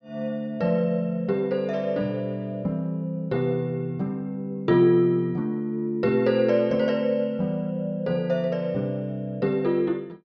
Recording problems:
none

